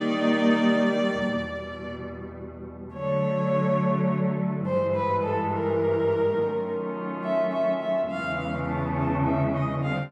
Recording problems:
none

